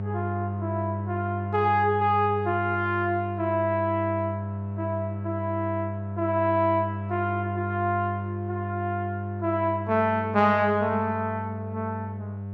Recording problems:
electrical hum; 50 Hz, harmonics up to 900 Hz, SNR 6 dB

